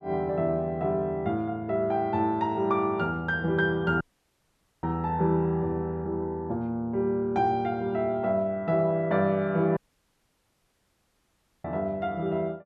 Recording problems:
dropout; at 4 s for 1 s and at 10 s for 2 s

